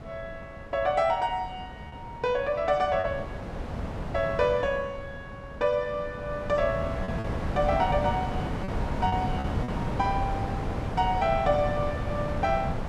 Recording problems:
wind on the microphone; below 520 Hz, SNR 5 dB
lost packets; 3% of the sound replaced, filled with repeated pitch periods

